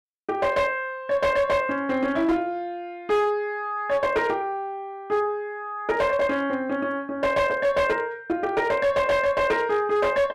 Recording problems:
distortion; hard clipping, signal-to-distortion ratio 12 dB

